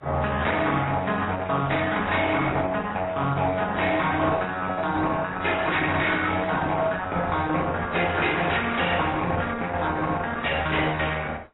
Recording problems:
lossy compression; Opus, then AAC, log-spectral distance 4 dB, nothing above 3.9 kHz
distorted audio; soft clipping, signal-to-distortion ratio 12 dB

